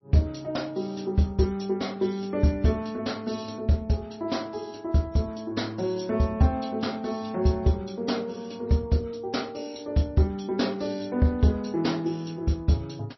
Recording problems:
lossy compression; MP3, log-spectral distance 4 dB, nothing above 5.8 kHz

